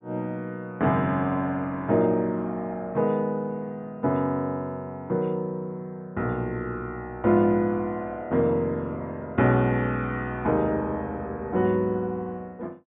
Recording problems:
low-pass filter; nothing above 4 kHz

